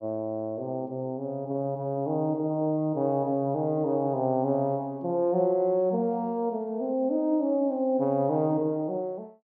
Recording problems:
none

